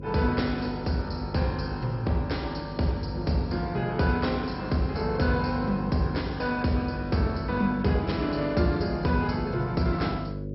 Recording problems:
codec artefacts; MP2, log-spectral distance 4 dB, nothing above 5.5 kHz
hum; 50 Hz, harmonics up to 550 Hz, SNR 9 dB

